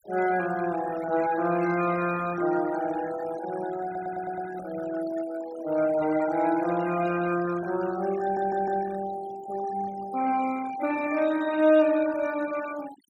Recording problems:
noise reduction artefacts; signal-to-artefact ratio 16 dB
audio stuttering; at 4 s and at 8 s

